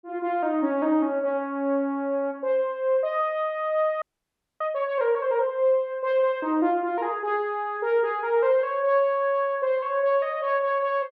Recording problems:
frozen audio; at 4 s for 0.5 s

